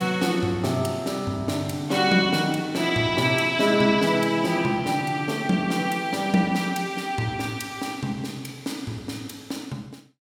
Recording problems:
none

